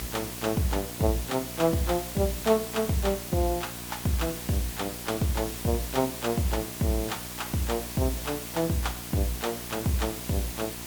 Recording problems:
hum; 60 Hz, harmonics up to 1.8 kHz, SNR 14 dB
hiss; slope -1 dB per octave, SNR 7 dB

